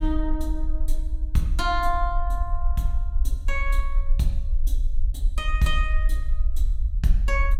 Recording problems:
rumble; below 46 Hz, SNR -1 dB

